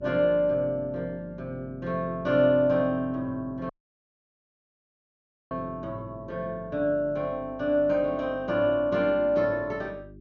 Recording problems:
treble missing; nothing above 6.8 kHz
electrical hum; 50 Hz, harmonics up to 400 Hz, SNR 21 dB
audio cutting out; at 3.5 s for 2 s

